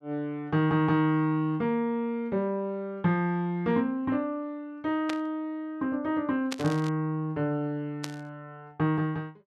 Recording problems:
static burst; at 5 s, at 6.5 s and at 8 s; peak -2 dB vs average level

